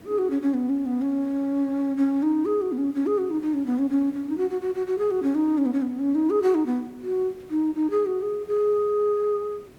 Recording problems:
background hiss; SNR 26 dB

